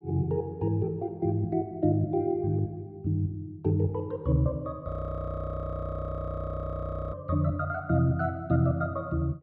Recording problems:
frozen audio; at 5 s for 2 s

